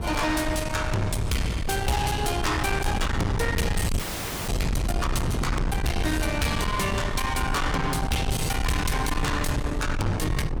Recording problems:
distorted audio; soft clipping, signal-to-distortion ratio 7 dB
rumble; below 260 Hz, SNR 3 dB
audio freezing; at 4 s

